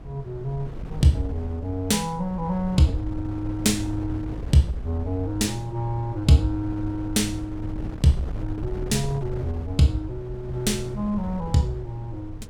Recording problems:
wind on the microphone; below 140 Hz, SNR 11 dB

